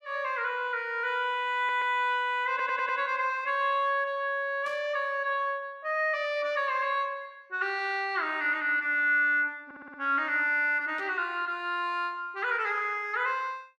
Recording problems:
audio stuttering; at 1.5 s, at 2.5 s and at 9.5 s
static burst; at 4.5 s and at 11 s; peak -16 dB vs average level

